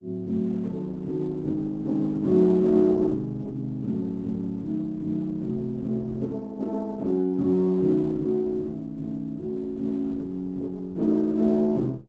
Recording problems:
lossy codec; Opus, log-spectral distance 2 dB, nothing above 7.8 kHz

